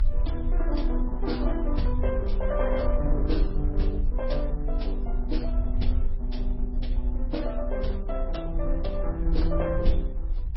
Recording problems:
lossy compression; Opus, then MP3, log-spectral distance 2 dB, nothing above 5.5 kHz
low-frequency rumble; below 48 Hz, strongest tone 30 Hz, SNR -2 dB

